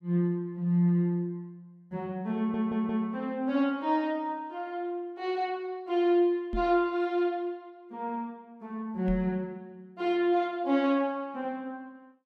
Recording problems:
stutter; at 2.5 s
microphone bump; at 6.5 s and at 9 s; peak -3 dB vs average level

